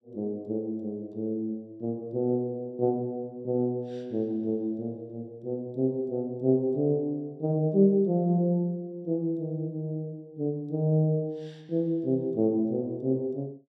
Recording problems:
none

